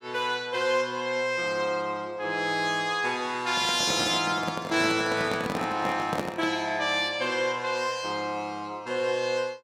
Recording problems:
handling noise; from 3.5 to 6.5 s; peak +1 dB vs average level

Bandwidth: 16 kHz